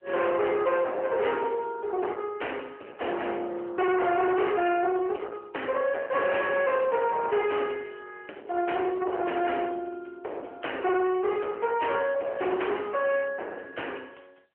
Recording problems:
telephone audio; 390 Hz to 3.1 kHz, AMR-NB
distorted audio; hard clipping, uneven, signal-to-distortion ratio 6 dB

